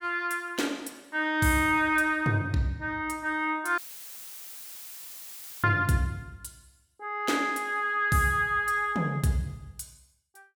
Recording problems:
audio cutting out; at 4 s for 2 s; filled with static

